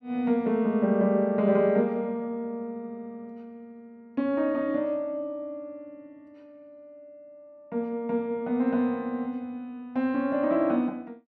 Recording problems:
none

